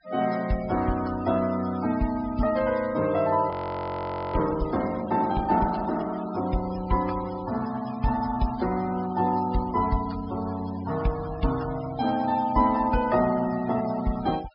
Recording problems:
low-pass filter; nothing above 5.5 kHz
noise reduction artefacts; signal-to-artefact ratio 17 dB
audio freezing; at 3.5 s for 1 s

